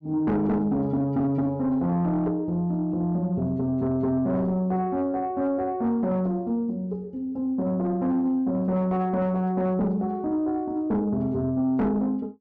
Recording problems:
distorted audio; soft clipping, signal-to-distortion ratio 12 dB

